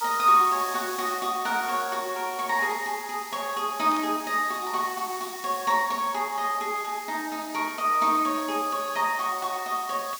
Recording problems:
hiss; slope +4 dB per octave, SNR 13 dB
static burst; at 4 s; peak -11 dB vs average level

